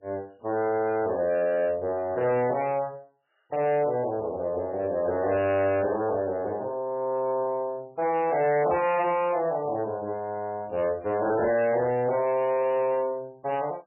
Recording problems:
lossy compression; MP3, log-spectral distance 2 dB, nothing above 2.8 kHz
distortion; hard clipping, signal-to-distortion ratio 11 dB

